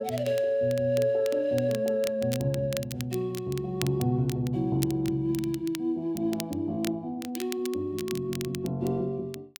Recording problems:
crackling; vinyl, SNR 14 dB

